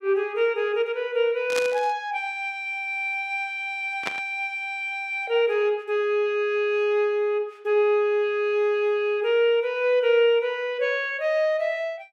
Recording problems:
static burst; at 1.5 s and at 4 s; peak -1 dB vs average level

